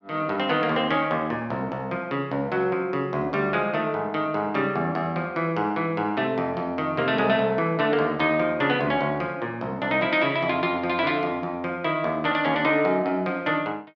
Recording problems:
none

